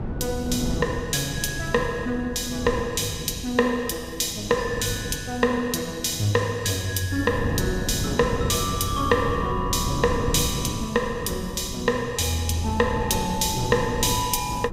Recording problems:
wind noise; below 260 Hz, SNR 8 dB

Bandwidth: 15.5 kHz